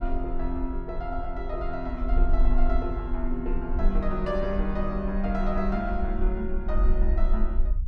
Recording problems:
rumble; below 44 Hz, strongest tone 24 Hz, SNR -1 dB

